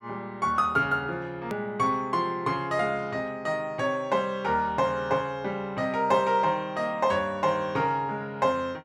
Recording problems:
click at an edit; at 1.5 s

